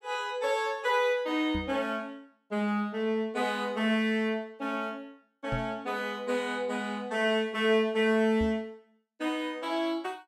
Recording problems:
microphone thump; at 1.5 s, at 5.5 s and at 8.5 s; peak -2 dB vs average level

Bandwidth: 14.5 kHz